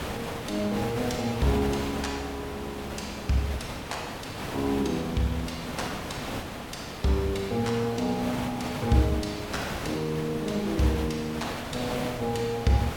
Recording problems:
hiss; slope -5 dB per octave, SNR 6 dB

